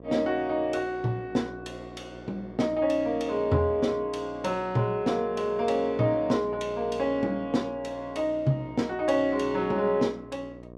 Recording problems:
hum; 60 Hz, harmonics up to 1.3 kHz, SNR 18 dB

